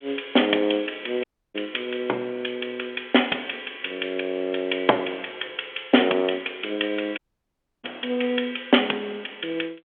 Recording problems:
telephone audio; 260 Hz to 3.4 kHz, G.726
audio cutting out; at 1 s and at 7 s for 0.5 s

